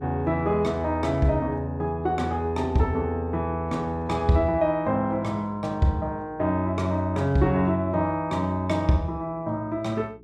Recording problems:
hum; 60 Hz, harmonics up to 420 Hz, SNR 23 dB

